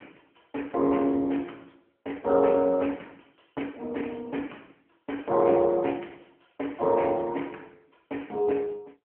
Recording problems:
telephone audio; 240 Hz to 3.1 kHz, AMR-NB

